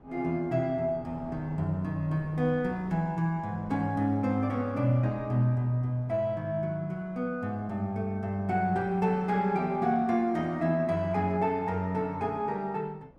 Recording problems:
wind noise; below 570 Hz, SNR 23 dB

